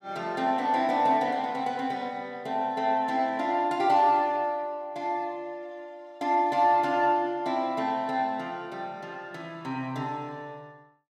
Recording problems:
none

